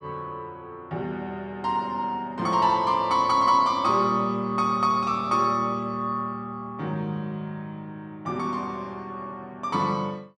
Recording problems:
none

